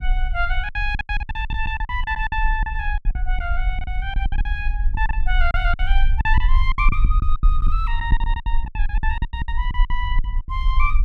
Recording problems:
low-frequency rumble; below 46 Hz, strongest tone 20 Hz, SNR -3 dB
packet loss; 18% of the sound replaced, filled with silence

